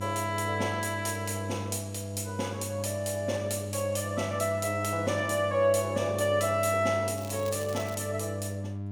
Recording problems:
hum; 50 Hz, harmonics up to 700 Hz, SNR 7 dB
crackling; at 7 s; loose cable, SNR 17 dB

